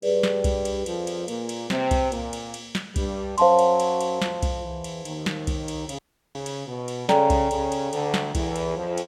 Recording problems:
audio cutting out; at 6 s

